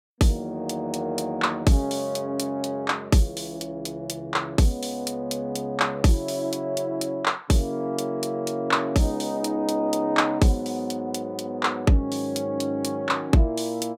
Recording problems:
none

